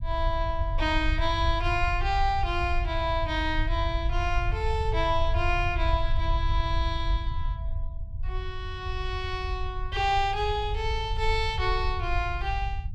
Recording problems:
low-frequency rumble; below 72 Hz, SNR 3 dB

